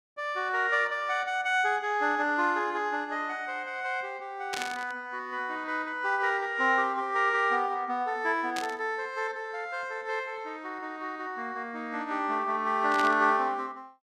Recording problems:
burst of static; at 4.5 s, at 8.5 s and at 13 s; peak -1 dB vs average level

